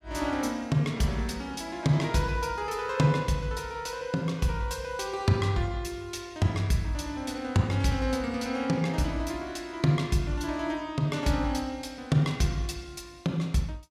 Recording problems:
none

